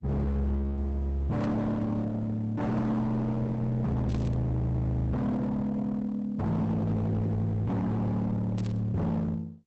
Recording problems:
lossy codec; Opus, log-spectral distance 2 dB
distorted audio; hard clipping, signal-to-distortion ratio 7 dB
static burst; at 1.5 s, at 4 s and at 8.5 s; peak -14 dB vs average level

